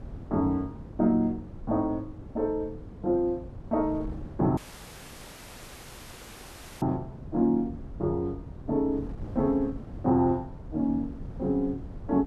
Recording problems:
wind noise; below 210 Hz, SNR 13 dB
dropout; at 4.5 s for 2.5 s

